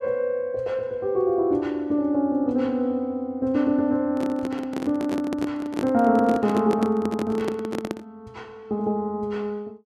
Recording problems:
microphone handling noise; from 4 to 8 s; peak 0 dB vs average level

